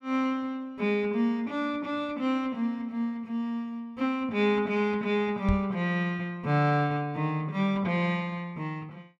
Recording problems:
microphone thump; at 5.5 s; peak +4 dB vs average level

